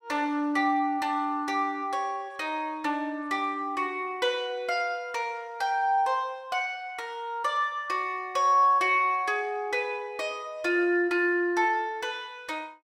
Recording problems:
none

